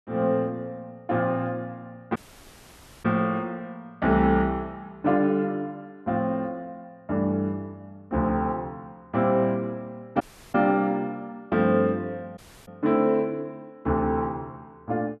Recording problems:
audio cutting out; at 2 s for 1 s, at 10 s and at 12 s

